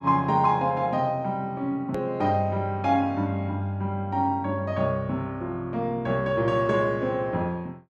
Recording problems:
hard cut with a click; at 2 s

